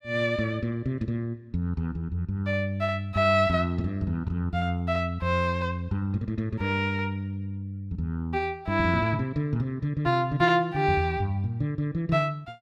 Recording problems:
none

